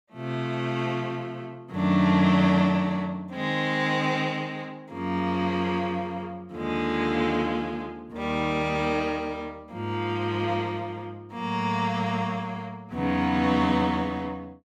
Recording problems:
none

